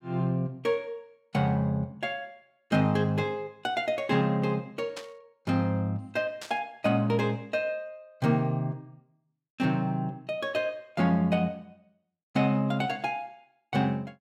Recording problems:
static burst; at 5 s and at 6.5 s; peak -7 dB vs average level

